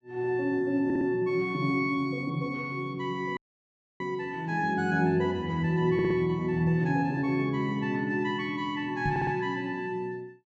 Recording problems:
treble cut off; nothing above 8 kHz
stutter; at 1 s, at 6 s and at 9 s
dropout; at 3.5 s for 0.5 s
knock on the microphone; at 9 s; peak 0 dB vs average level

